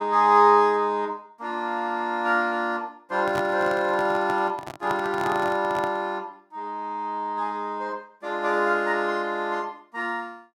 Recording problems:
handling noise; from 3 to 6 s; peak -3 dB vs average level

